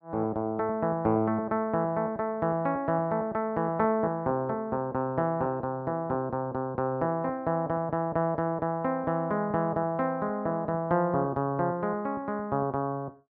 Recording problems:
none

